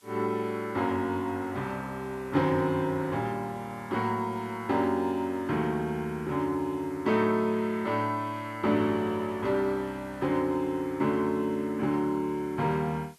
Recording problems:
hiss; slope +1 dB per octave, SNR 29 dB

